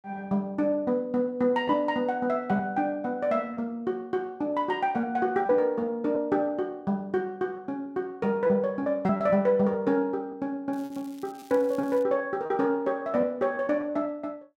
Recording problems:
lost packets; 4% of the sound replaced, filled with repeated pitch periods
crackle; from 11 to 12 s; loose cable, SNR 26 dB

